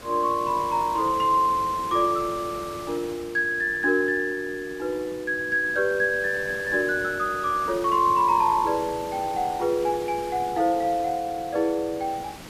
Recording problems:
background hiss; slope -4 dB per octave, SNR 16 dB

